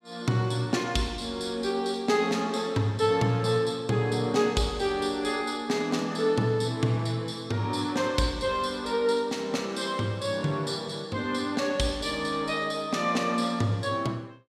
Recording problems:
none

